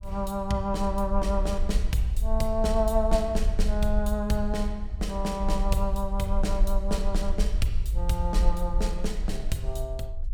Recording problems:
rumble; below 52 Hz, SNR 1 dB

